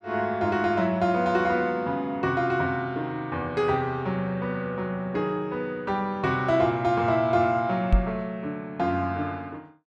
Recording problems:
microphone bump; at 8 s; peak +8 dB vs average level

